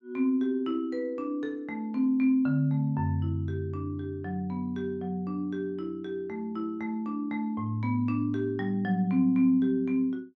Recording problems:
none

